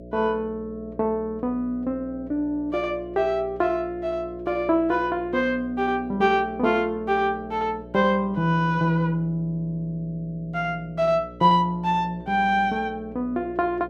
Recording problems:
electrical hum; 60 Hz, harmonics up to 660 Hz, SNR 17 dB

